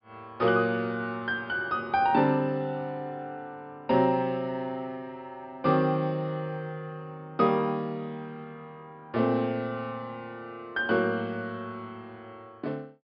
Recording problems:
treble missing; nothing above 5.5 kHz

